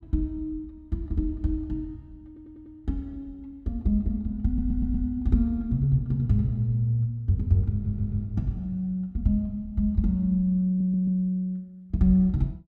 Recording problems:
stutter; 4 times, first at 2.5 s

